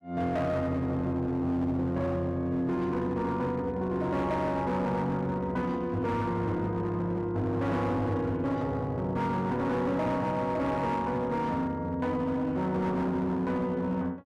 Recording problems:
distortion; hard clipping, signal-to-distortion ratio 12 dB

